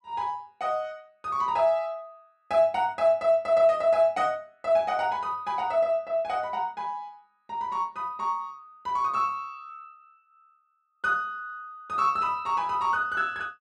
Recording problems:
none

